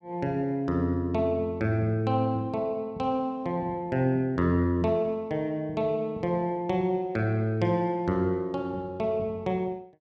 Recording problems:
none

